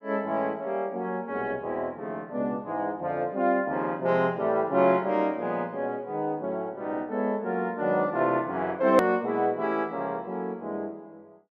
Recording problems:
click at an edit; at 9 s

